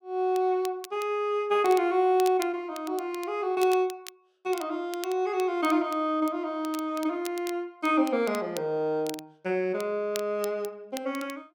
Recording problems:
crackle; vinyl, SNR 17 dB

